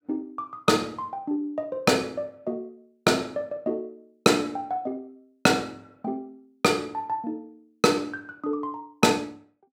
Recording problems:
none

